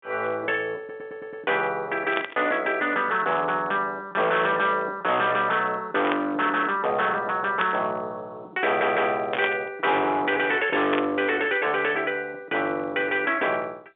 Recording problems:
phone line; 240 Hz to 3.9 kHz, G.711
distorted audio; hard clipping, signal-to-distortion ratio 10 dB
audio stuttering; at 1 s and at 8.5 s
burst of static; 5 times, first at 2 s; peak +1 dB vs average level

